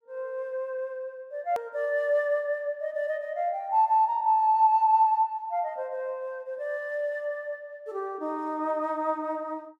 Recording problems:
click at an edit; at 1.5 s

